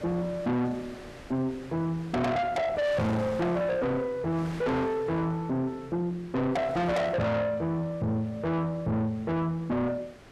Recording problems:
distorted audio; soft clipping, signal-to-distortion ratio 6 dB
wind on the microphone; below 2 kHz, SNR 18 dB

